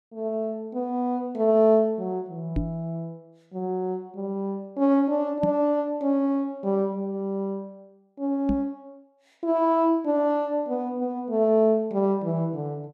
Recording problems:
knock on the microphone; at 2.5 s, at 5.5 s and at 8.5 s; peak +1 dB vs average level

